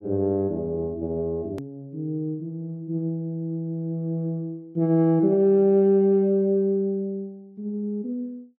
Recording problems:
click at an edit; at 1.5 s

